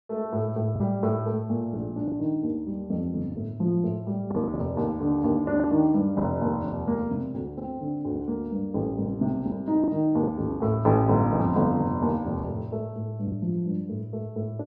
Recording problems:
lost packets; 5% of the sound replaced, filled with the last packet

